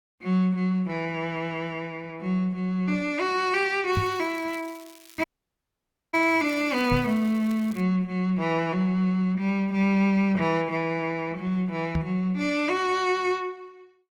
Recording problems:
lossy compression; Opus, log-spectral distance 2 dB, nothing above 18.3 kHz
crackle; from 4 to 8 s; loose cable, SNR 24 dB
microphone thump; at 4 s, at 7 s and at 12 s; peak +3 dB vs average level
audio cutting out; at 5 s for 1 s

